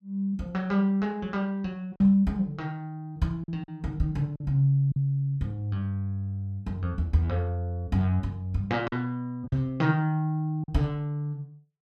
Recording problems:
lost packets; 3% of the sound replaced, filled with silence

